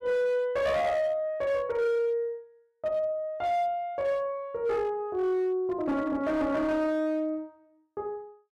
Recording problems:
distorted audio; hard clipping, signal-to-distortion ratio 11 dB

